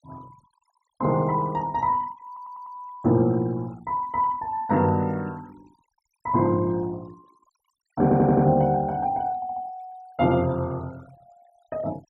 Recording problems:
noise reduction artefacts; signal-to-artefact ratio 27 dB
stutter; at 2.5 s, at 8 s and at 9.5 s

